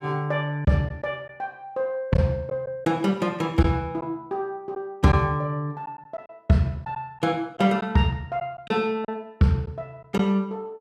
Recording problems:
packet loss; 3% of the sound replaced, filled with silence

